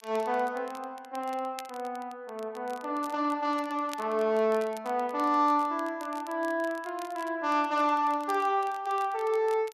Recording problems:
crackling; vinyl, SNR 22 dB

